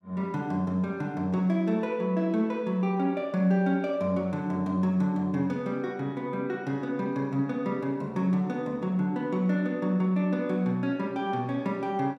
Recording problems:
none

